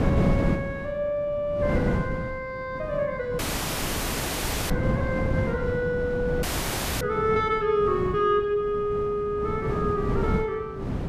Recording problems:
wind noise; below 300 Hz, SNR 3 dB
audio cutting out; at 3.5 s for 1.5 s and at 6.5 s for 0.5 s

